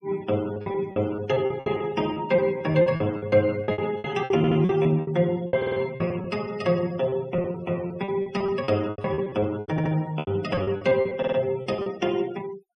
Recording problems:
noise reduction artefacts; signal-to-artefact ratio 21 dB
lost packets; 16% of the sound replaced, filled with repeated pitch periods
stutter; 4 times, first at 4.5 s

